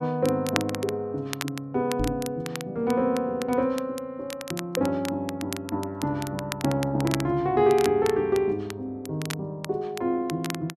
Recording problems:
crackle; vinyl, SNR 12 dB
microphone bump; at 2 s; peak +1 dB vs average level

